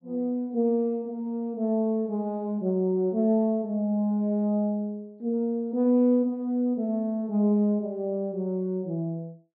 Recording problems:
treble cut off; nothing above 4.8 kHz

